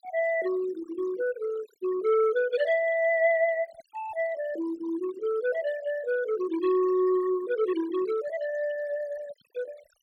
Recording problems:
denoising artefacts; signal-to-artefact ratio 18 dB

